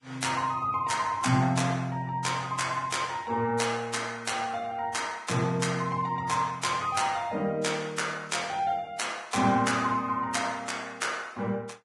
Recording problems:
codec artefacts; Vorbis, log-spectral distance 4 dB, nothing above 10.7 kHz

